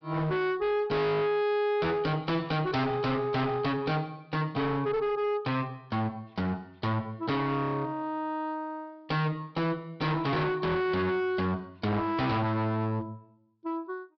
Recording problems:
treble missing; nothing above 5.5 kHz
distortion; hard clipping, uneven, signal-to-distortion ratio 6 dB

